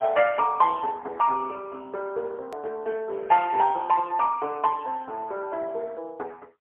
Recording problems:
telephone audio; 340 Hz to 2.6 kHz, AMR-NB, then MP3
edit click; at 2.5 s

